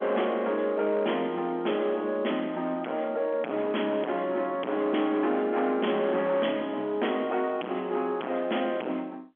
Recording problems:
phone line; 190 Hz to 3.4 kHz, G.711
distorted audio; hard clipping, signal-to-distortion ratio 8 dB

